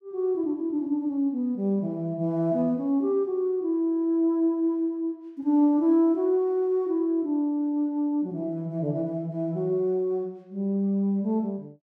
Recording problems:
none

